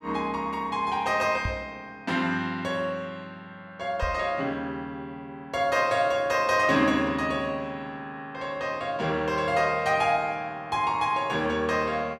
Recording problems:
microphone bump; at 1.5 s and at 4 s; peak -1 dB vs average level

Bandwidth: 14.5 kHz